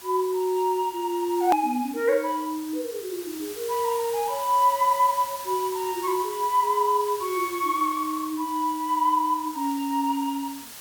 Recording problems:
background hiss; slope +1 dB per octave, SNR 14 dB
edit click; at 1.5 s

